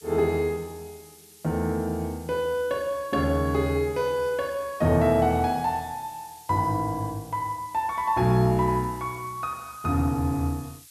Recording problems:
hiss; slope +6 dB per octave, SNR 22 dB

